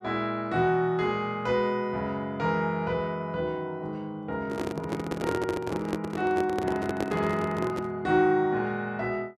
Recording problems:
microphone handling noise; from 4.5 to 8 s; peak +2 dB vs average level

